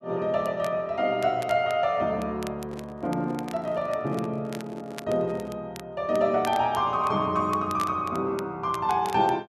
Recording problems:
crackling; vinyl, SNR 20 dB
handling noise; from 2.5 to 5.5 s; peak -8 dB vs average level

